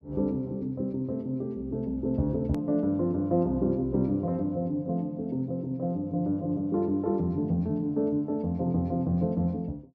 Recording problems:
hard cut with a click; at 2.5 s

